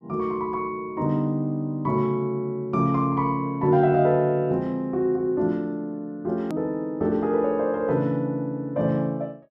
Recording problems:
click at an edit; at 6.5 s

